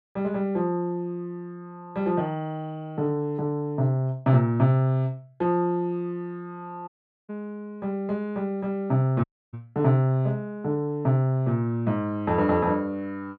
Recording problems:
dropout; at 7 s and at 9 s

